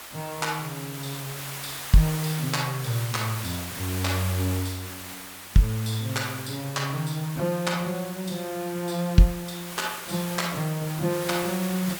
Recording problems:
background hiss; slope -1 dB per octave, SNR 8 dB

